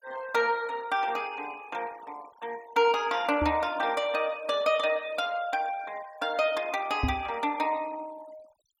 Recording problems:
denoising artefacts; signal-to-artefact ratio 22 dB
microphone bump; at 3.5 s and at 7 s; peak +3 dB vs average level

